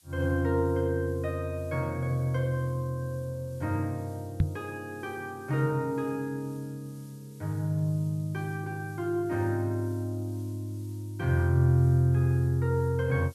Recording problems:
background hiss; slope +3 dB per octave, SNR 27 dB
microphone thump; at 4.5 s; peak +8 dB vs average level

